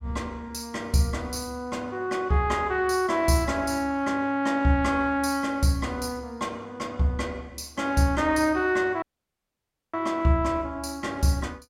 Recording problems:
dropout; at 9 s for 1 s

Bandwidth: 16 kHz